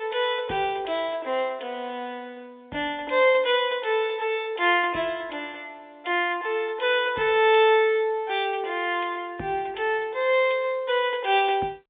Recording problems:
telephone audio; 260 Hz to 3.6 kHz, G.711

